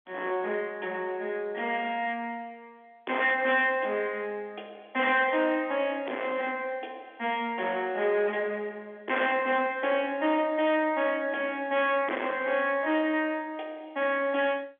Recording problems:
phone line; 260 Hz to 3.6 kHz, G.711
distortion; soft clipping, signal-to-distortion ratio 10 dB

